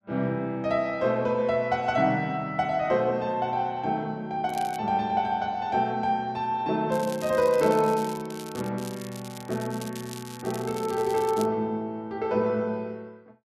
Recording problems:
crackling; at 4.5 s, from 7 to 8.5 s and from 9 to 11 s; loose cable, SNR 17 dB

